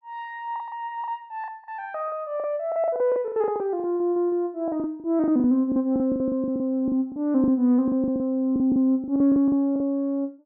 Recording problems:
packet loss; 17% of the sound replaced, filled with the last packet

